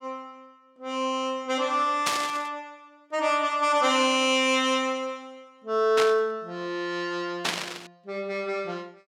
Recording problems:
static burst; at 2 s, at 6 s and at 7.5 s; peak +3 dB vs average level

